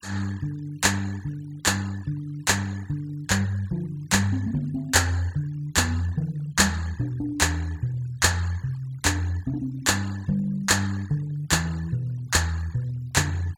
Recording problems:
noise reduction artefacts; signal-to-artefact ratio 24 dB

